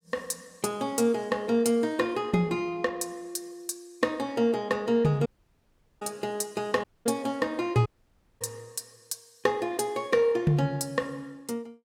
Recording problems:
audio cutting out; at 5.5 s for 1 s, at 7 s and at 8 s for 0.5 s

